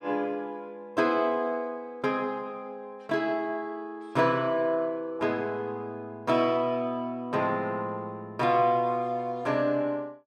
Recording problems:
none

